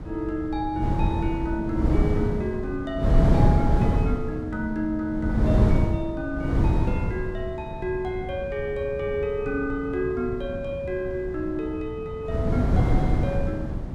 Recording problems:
wind noise; below 190 Hz, SNR -3 dB

